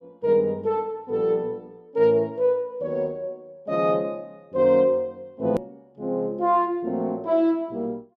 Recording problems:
hard cut with a click; at 5.5 s

